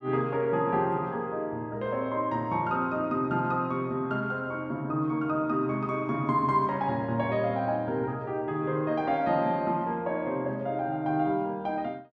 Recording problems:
none

